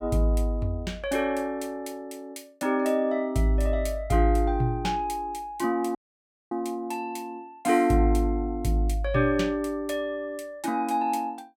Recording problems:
audio cutting out; at 6 s for 0.5 s

